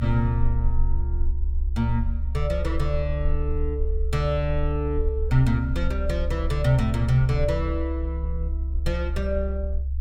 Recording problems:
rumble; below 68 Hz, SNR 1 dB

